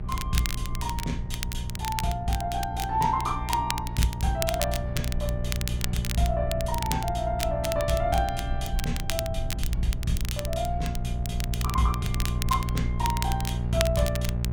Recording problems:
hum; 60 Hz, harmonics up to 600 Hz, SNR 3 dB
rumble; below 72 Hz, SNR 7 dB
crackling; vinyl, SNR 6 dB

